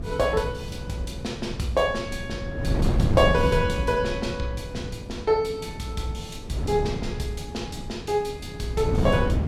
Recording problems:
wind on the microphone; below 210 Hz, SNR 3 dB

